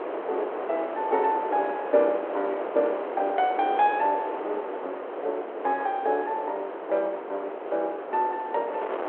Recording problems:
telephone audio; 320 Hz to 3.3 kHz, G.726
wind on the microphone; below 890 Hz, SNR 6 dB

